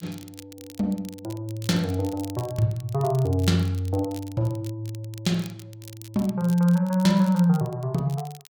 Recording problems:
crackle; vinyl, SNR 22 dB

